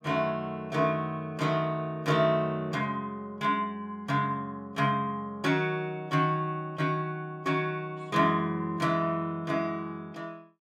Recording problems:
none

